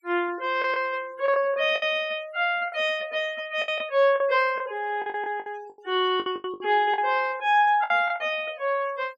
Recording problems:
noise reduction artefacts; signal-to-artefact ratio 24 dB
lost packets; 10% of the sound replaced, filled with the last packet

